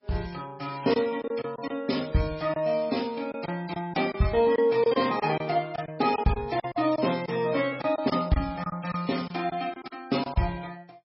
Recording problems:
lossy compression; MP3, log-spectral distance 5 dB, nothing above 5.3 kHz
lost packets; 8% of the sound replaced, filled with silence

